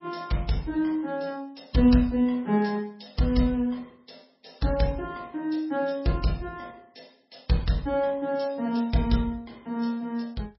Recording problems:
codec artefacts; MP3, log-spectral distance 4 dB, nothing above 5.5 kHz

